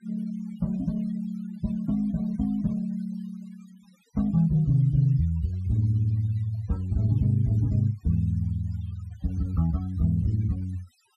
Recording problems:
noise reduction artefacts; signal-to-artefact ratio 27 dB

